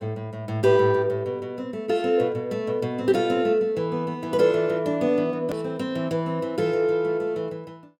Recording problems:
edit click; at 5.5 s

